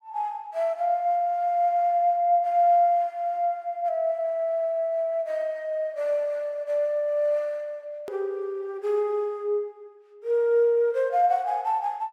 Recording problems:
hard cut with a click; at 8 s

